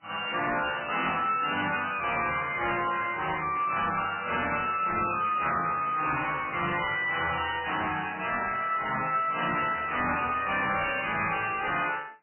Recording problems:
codec artefacts; MP3, then MP3, log-spectral distance 8 dB, nothing above 3 kHz
distortion; hard clipping, signal-to-distortion ratio 7 dB

